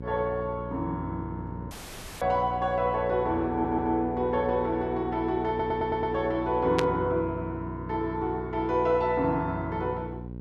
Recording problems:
electrical hum; 60 Hz, harmonics up to 600 Hz, SNR 11 dB
dropout; at 1.5 s for 0.5 s
stutter; at 3.5 s and at 5.5 s
static burst; at 7 s; peak +2 dB vs average level

